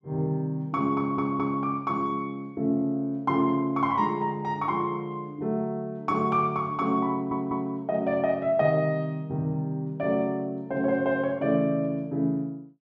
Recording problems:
audio stuttering; at 1 s and at 7 s

